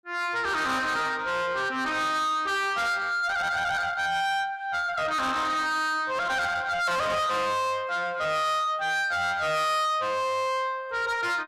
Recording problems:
distortion; soft clipping, signal-to-distortion ratio 7 dB

